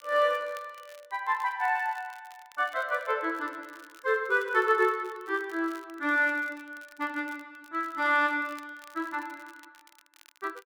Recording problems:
crackling; vinyl, SNR 27 dB

